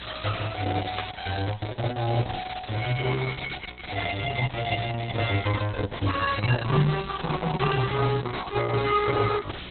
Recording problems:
lossy compression; Opus, log-spectral distance 16 dB, nothing above 4 kHz
hum; 60 Hz, harmonics up to 420 Hz, SNR 19 dB
hiss; SNR 13 dB
static burst; at 1 s, at 4 s and at 7.5 s; peak -1 dB vs average level

